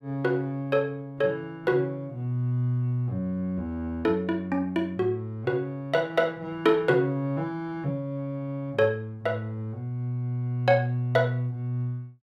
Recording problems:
none

